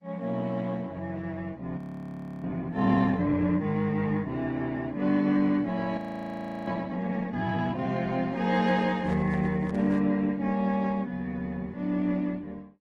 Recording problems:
codec artefacts; Opus, then AAC, log-spectral distance 2 dB, nothing above 16.1 kHz
frozen audio; at 2 s for 0.5 s and at 6 s for 0.5 s
microphone handling noise; from 8.5 to 10 s; peak -12 dB vs average level

